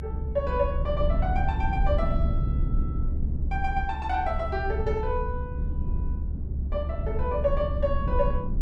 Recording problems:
rumble; below 78 Hz, SNR 0 dB

